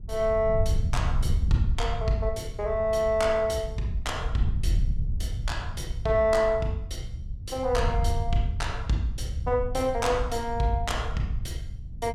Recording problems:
wind on the microphone; below 88 Hz, SNR 4 dB

